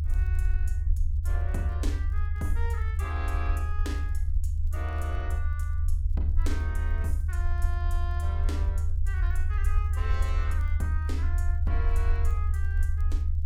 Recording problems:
rumble; below 78 Hz, SNR -11 dB
crackle; vinyl, SNR 29 dB

